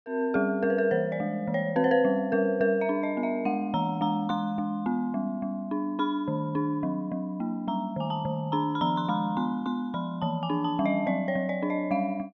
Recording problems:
none

